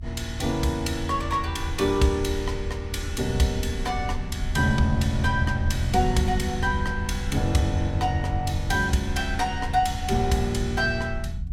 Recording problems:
rumble; below 80 Hz, SNR 7 dB

